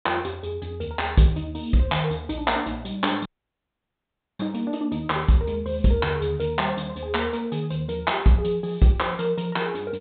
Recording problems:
treble missing; nothing above 4 kHz
audio cutting out; at 3.5 s for 1 s

